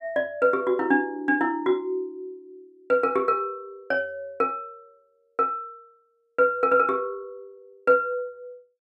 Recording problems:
none

